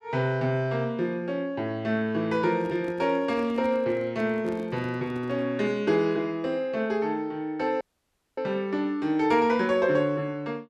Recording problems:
microphone handling noise; from 2.5 to 5.5 s; peak -10 dB vs average level
dropout; at 8 s for 0.5 s

